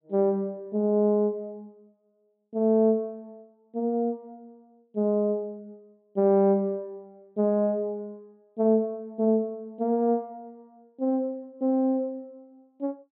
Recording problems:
low-pass filter; nothing above 4 kHz

